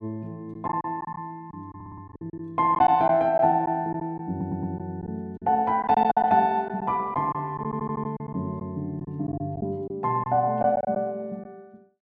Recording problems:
packet loss; 8% of the sound replaced, filled with silence
stutter; at 2 s, at 4.5 s and at 7.5 s

